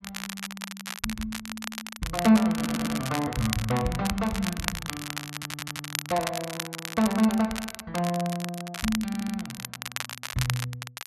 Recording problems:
crackling; vinyl, SNR 7 dB
stutter; at 2.5 s, at 5.5 s and at 9 s

